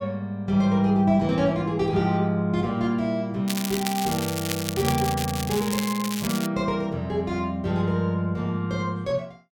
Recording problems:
crackle; from 3.5 to 6.5 s; loose cable, SNR 7 dB

